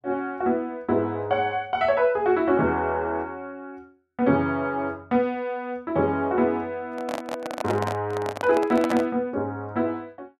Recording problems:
microphone handling noise; from 7 to 9 s; peak 0 dB vs average level

